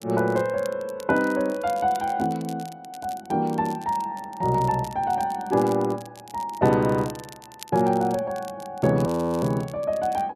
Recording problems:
crackle; vinyl, SNR 22 dB
frozen audio; at 9 s

